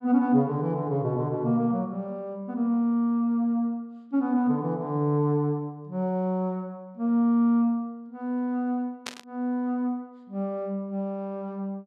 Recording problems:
burst of static; at 9 s; peak -2 dB vs average level

